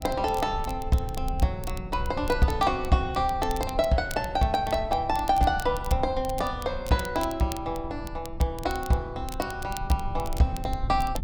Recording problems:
rumble; below 84 Hz, SNR 11 dB
crackling; vinyl, SNR 17 dB

